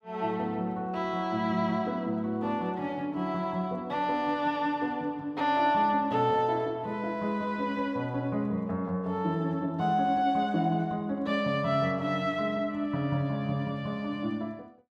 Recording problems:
none

